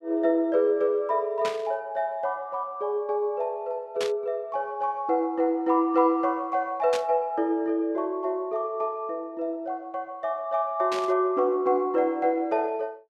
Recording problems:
static burst; 4 times, first at 1.5 s; peak -3 dB vs average level

